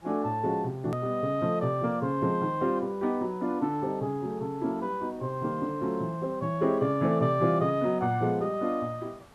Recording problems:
hiss; SNR 27 dB
click at an edit; at 1 s

